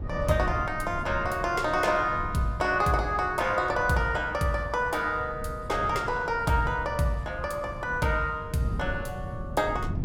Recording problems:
wind noise; below 160 Hz, SNR 12 dB

